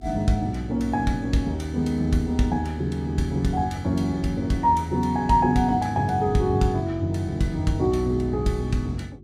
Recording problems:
hum; 50 Hz, harmonics up to 400 Hz, SNR 24 dB

